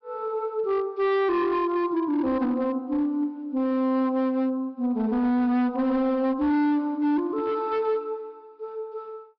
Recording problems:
treble missing; nothing above 5.5 kHz
distorted audio; hard clipping, signal-to-distortion ratio 11 dB

